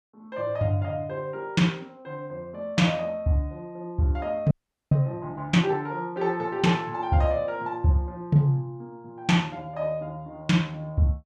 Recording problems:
audio freezing; at 4.5 s

